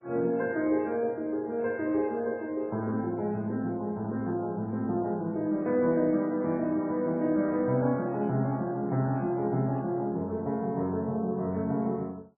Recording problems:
lossy compression; MP2, then MP3, log-spectral distance 2 dB

